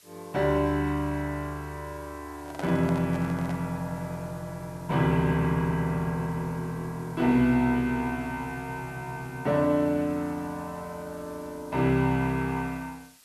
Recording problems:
background hiss; slope +2 dB per octave, SNR 25 dB
handling noise; from 2.5 to 3.5 s; peak -4 dB vs average level

